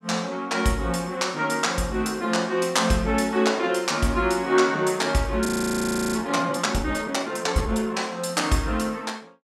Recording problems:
frozen audio; at 5.5 s for 0.5 s

